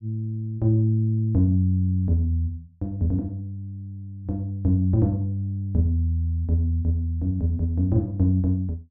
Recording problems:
none

